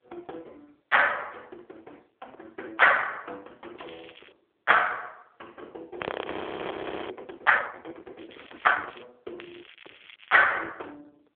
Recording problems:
telephone audio; 340 Hz to 3.5 kHz, AMR-NB
crackling; 4 times, first at 4 s; loose cable, SNR 25 dB
frozen audio; at 6 s for 1 s

